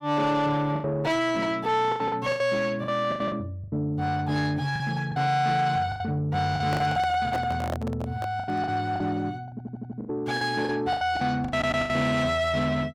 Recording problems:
distortion; soft clipping, signal-to-distortion ratio 12 dB
packet loss; 12% of the sound replaced, filled with the last packet
handling noise; from 6.5 to 8.5 s; peak 0 dB vs average level
audio stuttering; at 9.5 s and at 12 s

